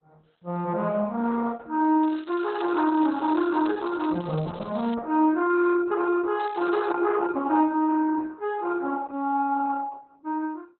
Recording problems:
lossy compression; Opus, log-spectral distance 5 dB, nothing above 4 kHz
crackle; from 2 to 5 s and at 6.5 s; loose cable, SNR 24 dB

